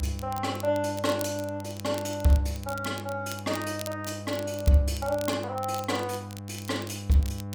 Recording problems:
electrical hum; 50 Hz, harmonics up to 1 kHz, SNR 11 dB
crackling; vinyl, SNR 15 dB

